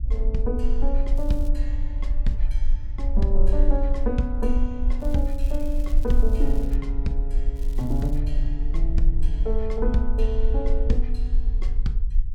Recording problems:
low-frequency rumble; below 42 Hz, strongest tone 18 Hz, SNR -4 dB
crackling; at 1 s, from 5 to 7 s and at 7.5 s; loose cable, SNR 22 dB

